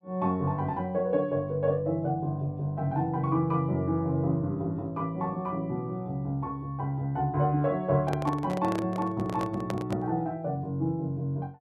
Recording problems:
microphone handling noise; from 8 to 10 s; peak -1 dB vs average level

